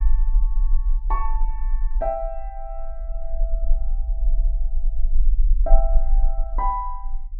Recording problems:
treble cut off; nothing above 6.9 kHz
rumble; below 38 Hz, strongest tone 18 Hz, SNR -6 dB

